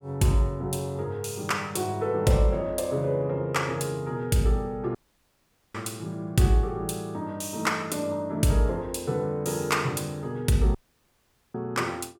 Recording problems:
audio cutting out; at 5 s for 1 s and at 11 s for 1 s

